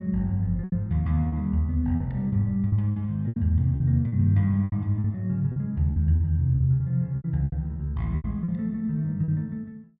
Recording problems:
packet loss; 11% of the sound replaced, filled with repeated pitch periods

